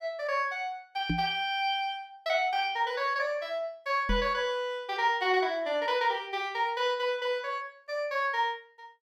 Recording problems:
knock on the microphone; at 1 s and at 4 s; peak +3 dB vs average level

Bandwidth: 16 kHz